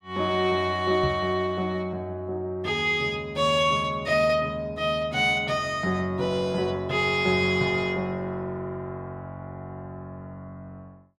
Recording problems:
microphone bump; at 1 s; peak -2 dB vs average level

